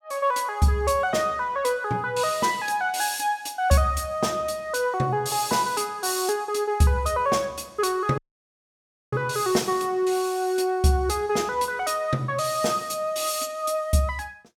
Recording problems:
audio cutting out; at 8 s for 1 s

